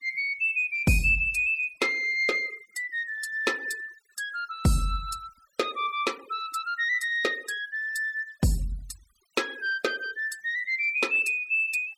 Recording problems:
denoising artefacts; signal-to-artefact ratio 23 dB

